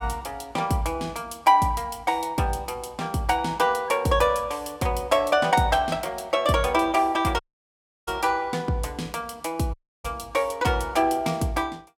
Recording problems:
audio cutting out; at 7.5 s for 0.5 s and at 9.5 s

